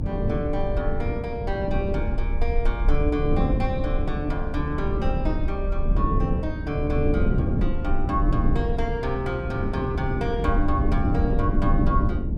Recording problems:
rumble; below 58 Hz, SNR 2 dB
wind noise; below 250 Hz, SNR -1 dB

